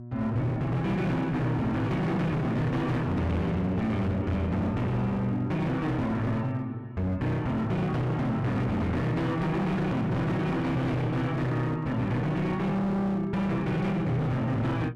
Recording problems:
distorted audio; hard clipping, uneven, signal-to-distortion ratio 7 dB
hum; 60 Hz, harmonics up to 720 Hz, SNR 14 dB

